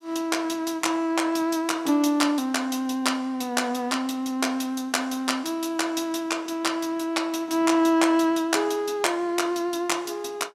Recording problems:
none

